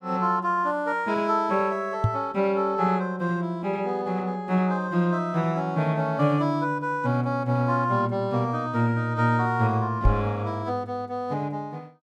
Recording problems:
microphone bump; at 2 s and at 10 s; peak +6 dB vs average level

